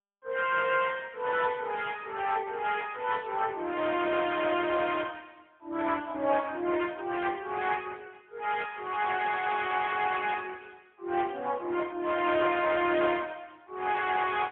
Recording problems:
phone line; 300 Hz to 3.4 kHz, AMR-NB, then MP3

